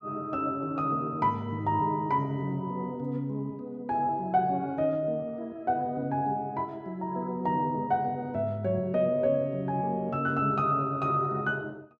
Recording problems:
none

